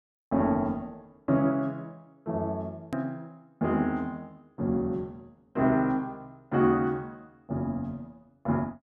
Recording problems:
hard cut with a click; at 3 s

